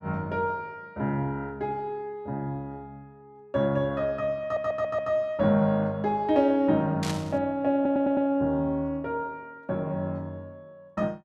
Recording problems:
stutter; at 4.5 s and at 8 s
static burst; at 7 s; peak -3 dB vs average level

